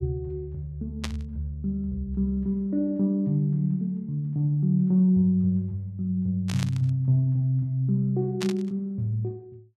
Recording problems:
burst of static; at 1 s, at 6.5 s and at 8.5 s; peak -3 dB vs average level

